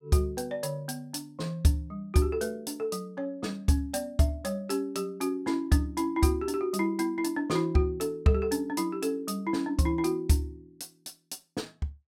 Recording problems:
none

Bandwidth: 16 kHz